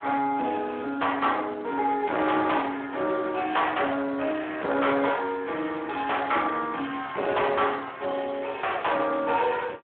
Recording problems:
telephone audio; 240 Hz to 3.4 kHz, Speex
distorted audio; soft clipping, signal-to-distortion ratio 10 dB

